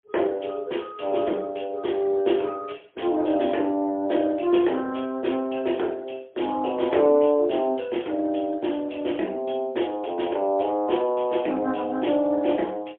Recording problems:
phone line; 280 Hz to 3.4 kHz, AMR-NB, then MP3

